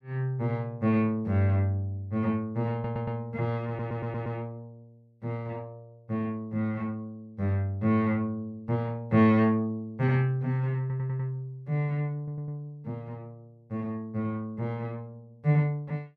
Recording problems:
stutter; 4 times, first at 2.5 s

